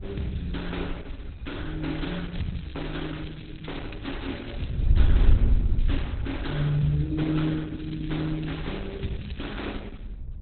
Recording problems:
codec artefacts; Opus, log-spectral distance 7 dB, nothing above 4 kHz
wind noise; below 72 Hz, SNR 0 dB
crackle; from 2 to 4.5 s, at 6 s and from 8 to 10 s; loose cable, SNR 16 dB

